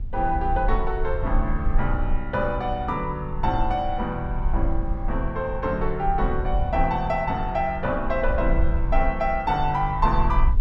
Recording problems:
rumble; below 50 Hz, strongest tone 22 Hz, SNR 4 dB

